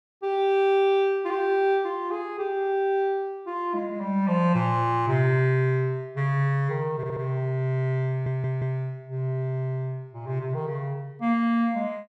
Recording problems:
stutter; at 7 s and at 8 s

